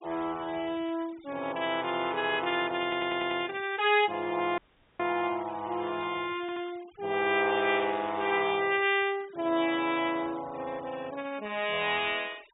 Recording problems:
low-pass filter; nothing above 4 kHz
noise reduction artefacts; signal-to-artefact ratio 21 dB
audio stuttering; at 3 s and at 6.5 s
dropout; at 4.5 s

